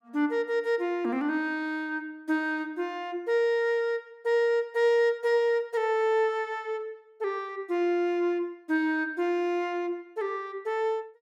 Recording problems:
none

